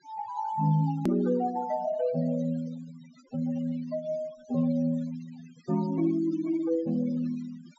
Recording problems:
low-pass filter; nothing above 8 kHz
denoising artefacts; signal-to-artefact ratio 19 dB
edit click; at 1 s

